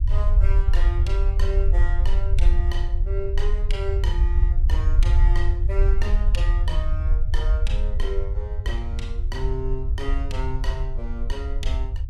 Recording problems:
rumble; below 58 Hz, SNR -10 dB

